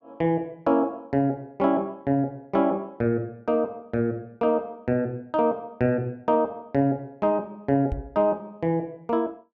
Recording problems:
microphone thump; at 8 s; peak -1 dB vs average level

